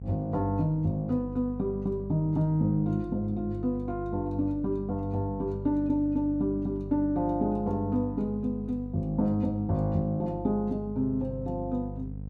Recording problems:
hum; 50 Hz, harmonics up to 500 Hz, SNR 10 dB

